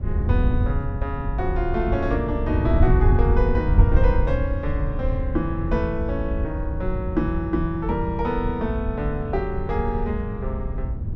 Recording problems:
wind on the microphone; below 94 Hz, SNR -1 dB

